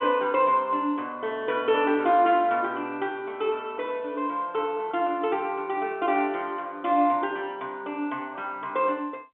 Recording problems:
telephone audio; 240 Hz to 3.5 kHz, G.711

